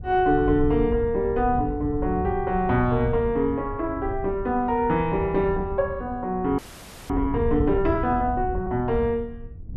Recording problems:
wind on the microphone; below 100 Hz, SNR 10 dB
audio freezing; at 6.5 s for 0.5 s

